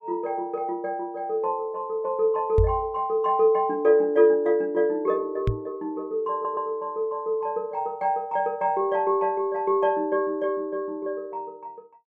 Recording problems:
knock on the microphone; at 2.5 s and at 5.5 s; peak +5 dB vs average level
audio stuttering; at 6.5 s

